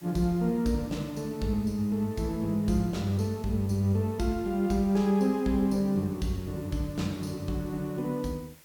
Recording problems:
background hiss; slope -1 dB per octave, SNR 25 dB

